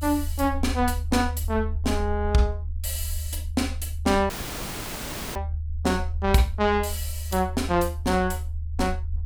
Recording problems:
rumble; below 78 Hz, strongest tone 76 Hz, SNR 5 dB
audio cutting out; at 4.5 s for 1 s

